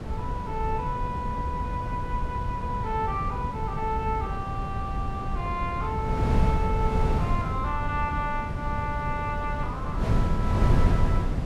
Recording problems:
wind noise; below 160 Hz, SNR -2 dB

